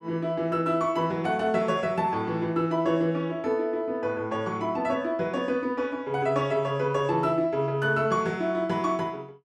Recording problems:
none

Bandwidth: 13 kHz